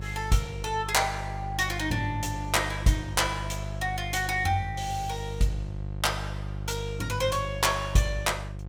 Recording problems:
electrical hum; 50 Hz, harmonics up to 700 Hz, SNR 8 dB

